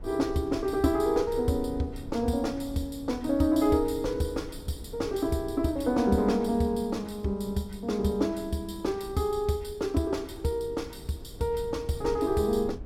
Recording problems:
rumble; below 150 Hz, SNR 16 dB

